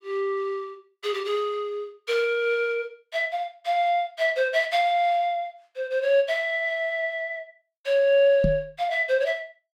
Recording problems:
microphone thump; at 8.5 s; peak +3 dB vs average level

